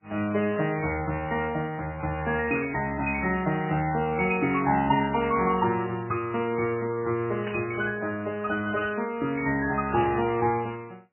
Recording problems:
lossy compression; MP3, log-spectral distance 4 dB, nothing above 2.5 kHz
static burst; 4 times, first at 2.5 s; peak -5 dB vs average level

